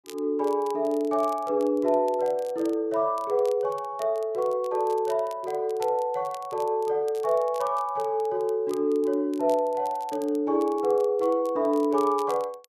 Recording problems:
crackle; vinyl, SNR 25 dB

